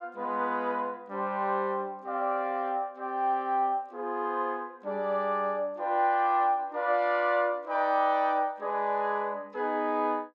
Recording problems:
none

